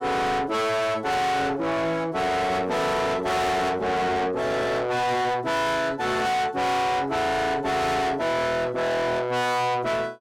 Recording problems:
distortion; soft clipping, signal-to-distortion ratio 6 dB

